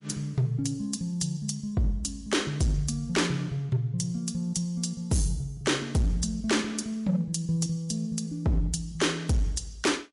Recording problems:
codec artefacts; MP3, log-spectral distance 2 dB
distorted audio; hard clipping, signal-to-distortion ratio 11 dB

